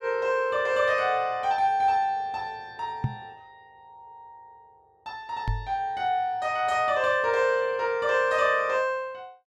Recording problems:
microphone thump; at 3 s and at 5.5 s; peak +2 dB vs average level

